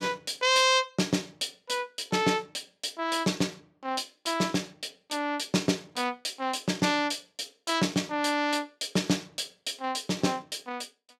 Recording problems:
none

